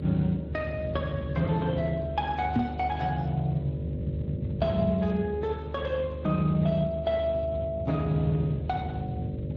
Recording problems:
codec artefacts; AAC, then Speex, log-spectral distance 2 dB
hum; 50 Hz, harmonics up to 600 Hz, SNR 11 dB
rumble; below 160 Hz, strongest tone 74 Hz, SNR 7 dB
knock on the microphone; at 2.5 s; peak +6 dB vs average level

